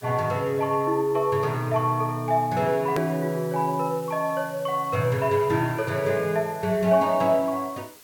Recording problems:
background hiss; slope 0 dB per octave, SNR 22 dB
hard cut with a click; at 3 s

